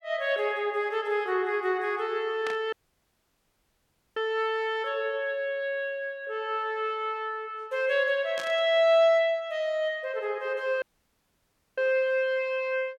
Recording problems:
static burst; at 2.5 s and at 8.5 s; peak -6 dB vs average level
dropout; at 2.5 s for 1.5 s and at 11 s for 1 s

